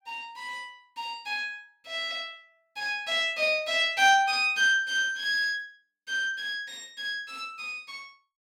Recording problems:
none

